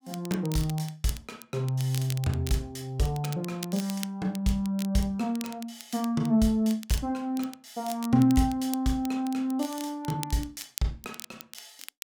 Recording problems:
crackle; vinyl, SNR 15 dB

